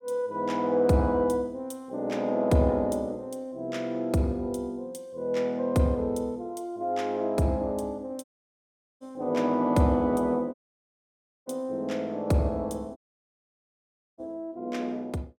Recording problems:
audio cutting out; at 8 s for 1 s, at 11 s for 1 s and at 13 s for 1 s

